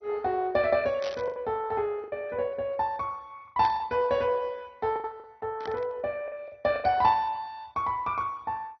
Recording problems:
codec artefacts; MP2, log-spectral distance 2 dB
packet loss; 7% of the sound replaced, filled with the last packet
burst of static; at 1 s, at 3.5 s and at 5.5 s; peak -7 dB vs average level

